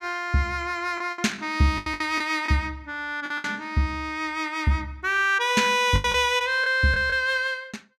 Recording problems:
packet loss; 7% of the sound replaced, filled with the last packet

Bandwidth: 14 kHz